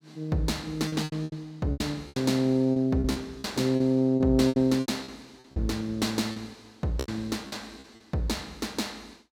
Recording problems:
packet loss; 13% of the sound replaced, filled with repeated pitch periods

